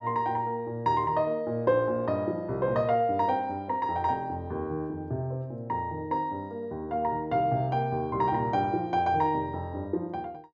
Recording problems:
none

